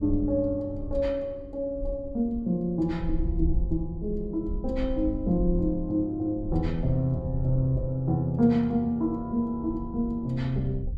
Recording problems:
wind noise; below 66 Hz, SNR 8 dB

